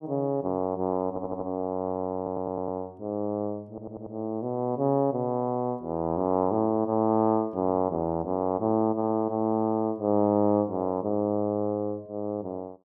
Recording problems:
audio stuttering; at 1 s, at 2 s and at 3.5 s

